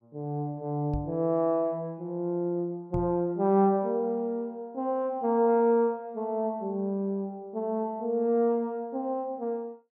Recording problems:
microphone thump; at 1 s and at 3 s; peak -1 dB vs average level

